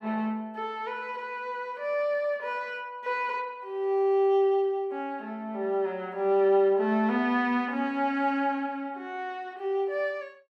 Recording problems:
none

